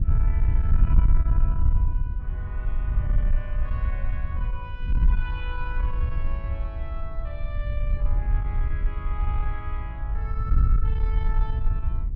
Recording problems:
distorted audio; soft clipping, signal-to-distortion ratio 12 dB
wind on the microphone; below 62 Hz, SNR -13 dB

